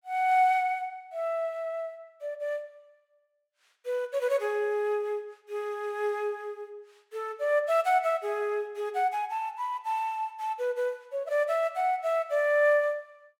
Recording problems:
none

